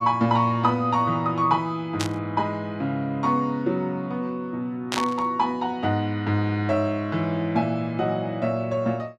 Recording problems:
static burst; at 2 s and at 5 s; peak +2 dB vs average level

